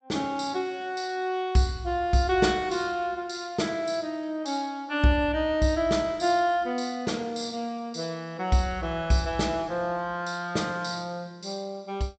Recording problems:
treble missing; nothing above 8 kHz

